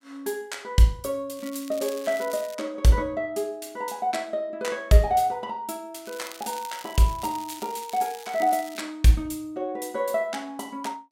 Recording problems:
crackling; from 1.5 to 2.5 s and from 6 to 9 s; loose cable, SNR 17 dB

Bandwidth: 16 kHz